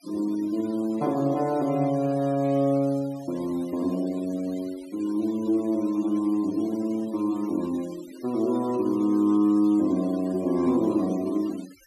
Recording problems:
denoising artefacts; signal-to-artefact ratio 23 dB

